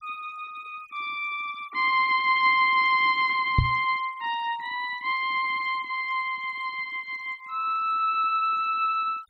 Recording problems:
noise reduction artefacts; signal-to-artefact ratio 23 dB
microphone bump; at 3.5 s; peak +6 dB vs average level

